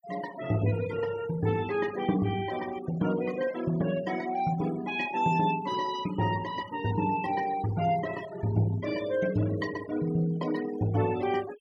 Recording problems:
noise reduction artefacts; signal-to-artefact ratio 16 dB

